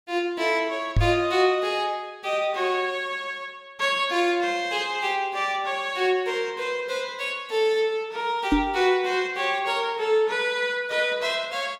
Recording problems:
knock on the microphone; at 1 s and at 8.5 s; peak +7 dB vs average level

